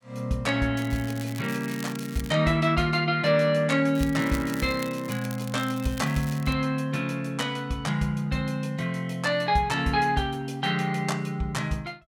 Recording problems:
crackling; from 1 to 2.5 s and from 4 to 6.5 s; loose cable, SNR 16 dB

